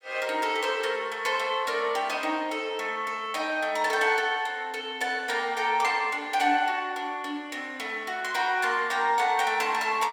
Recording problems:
none

